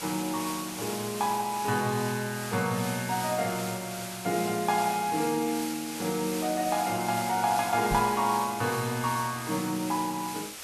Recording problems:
hiss; slope 0 dB per octave, SNR 8 dB
knock on the microphone; at 8 s; peak 0 dB vs average level

